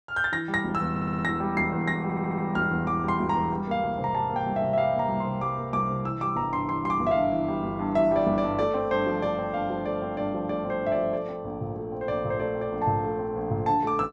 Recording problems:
audio stuttering; at 1 s and at 2 s

